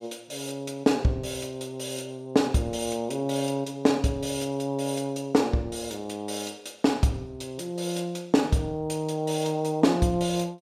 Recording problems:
none

